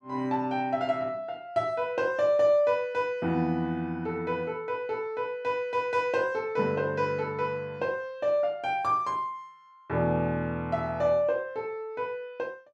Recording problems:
none

